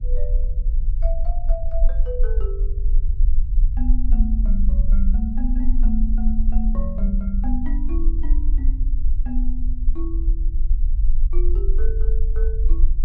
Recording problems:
low-frequency rumble; below 42 Hz, strongest tone 20 Hz, SNR -9 dB

